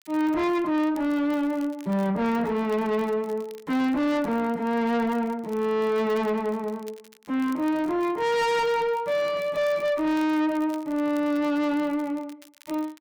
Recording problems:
distorted audio; soft clipping, signal-to-distortion ratio 6 dB
crackle; vinyl, SNR 27 dB

